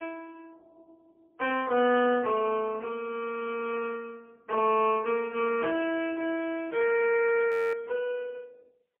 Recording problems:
telephone audio; 280 Hz to 3.2 kHz, AMR-NB, then MP3
audio freezing; at 7.5 s

